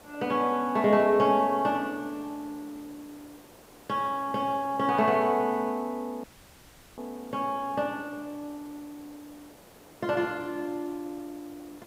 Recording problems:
background hiss; slope -6 dB per octave, SNR 23 dB
dropout; at 6 s for 0.5 s

